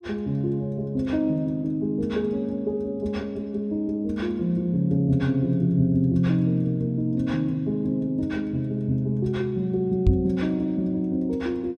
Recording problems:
knock on the microphone; at 10 s; peak +7 dB vs average level

